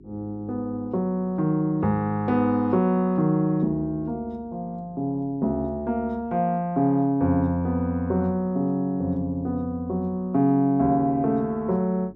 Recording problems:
electrical hum; 50 Hz, harmonics up to 400 Hz, SNR 26 dB

